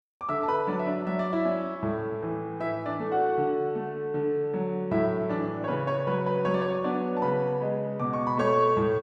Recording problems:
none

